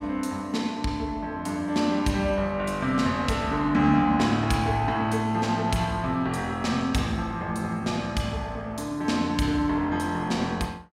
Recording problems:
none

